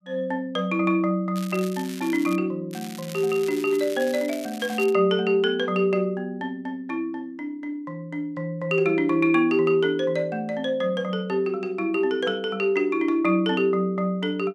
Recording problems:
crackling; from 1.5 to 2.5 s and from 2.5 to 5 s; loose cable, SNR 17 dB

